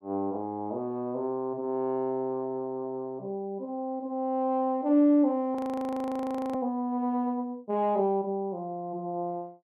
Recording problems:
frozen audio; at 5.5 s for 1 s

